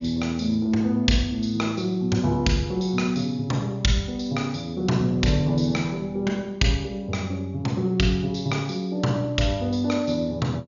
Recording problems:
low-pass filter; nothing above 7 kHz

